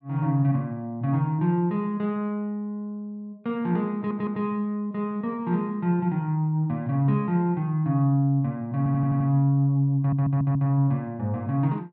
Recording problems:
audio stuttering; at 4 s, at 9 s and at 10 s

